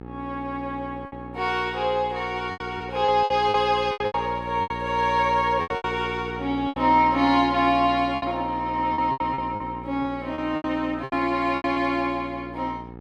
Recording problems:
hum; 60 Hz, harmonics up to 1.4 kHz, SNR 14 dB
packet loss; 10% of the sound replaced, filled with repeated pitch periods

